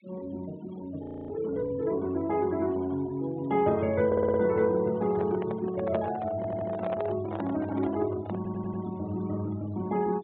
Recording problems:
low-pass filter; nothing above 4 kHz
noise reduction artefacts; signal-to-artefact ratio 21 dB
audio freezing; at 1 s
stutter; at 4 s, at 6.5 s and at 8.5 s
microphone handling noise; from 4.5 to 9 s; peak -2 dB vs average level

